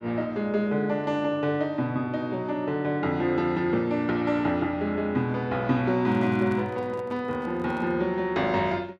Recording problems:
microphone handling noise; from 6 to 8 s; peak -11 dB vs average level

